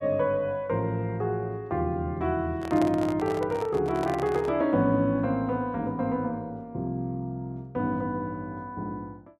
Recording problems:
handling noise; from 2.5 to 4.5 s; peak -1 dB vs average level

